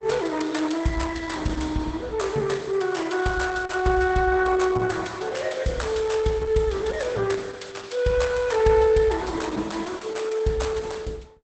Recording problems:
codec artefacts; Opus, log-spectral distance 4 dB, nothing above 8 kHz

